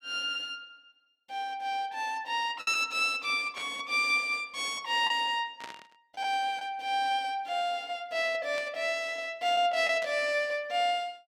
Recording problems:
lost packets; 1.9% of the sound replaced, filled with the last packet
burst of static; 4 times, first at 3.5 s; peak -9 dB vs average level

